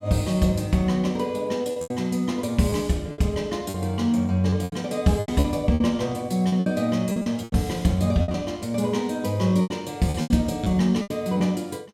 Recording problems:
lost packets; 10% of the sound replaced, filled with repeated pitch periods

